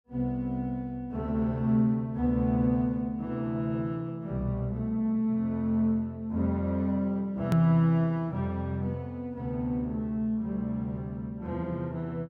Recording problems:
edit click; at 7.5 s

